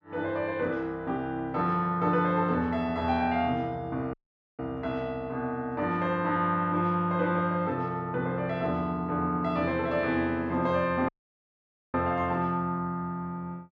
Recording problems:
dropout; at 4 s and at 11 s for 1 s

